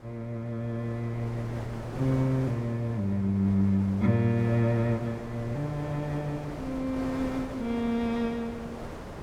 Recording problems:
wind on the microphone; below 790 Hz, SNR 12 dB

